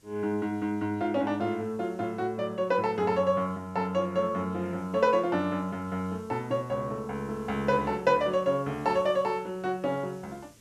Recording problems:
background hiss; SNR 29 dB

